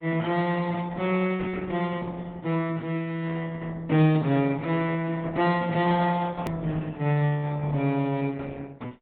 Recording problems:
low-pass filter; nothing above 4 kHz
lossy codec; Opus, log-spectral distance 3 dB
hard cut with a click; at 6.5 s

